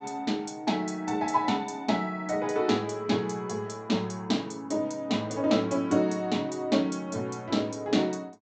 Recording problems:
treble cut off; nothing above 8 kHz

